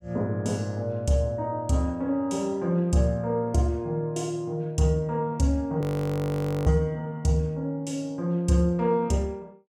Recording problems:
frozen audio; at 6 s for 1 s

